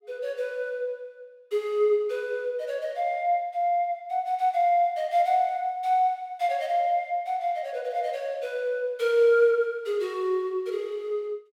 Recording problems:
none

